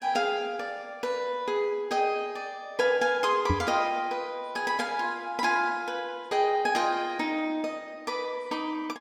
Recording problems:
microphone thump; at 3.5 s; peak +5 dB vs average level

